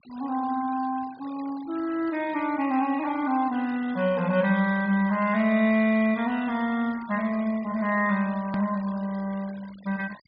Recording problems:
low-pass filter; nothing above 5 kHz
denoising artefacts; signal-to-artefact ratio 20 dB
click at an edit; at 8.5 s

